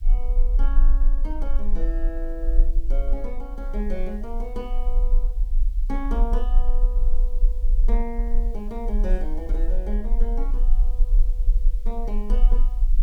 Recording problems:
background hiss; slope +2 dB per octave, SNR 26 dB
rumble; below 38 Hz, strongest tone 24 Hz, SNR -10 dB

